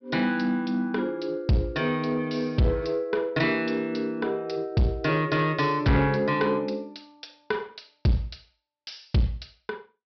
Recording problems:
treble cut off; nothing above 5.5 kHz
distortion; soft clipping, signal-to-distortion ratio 10 dB

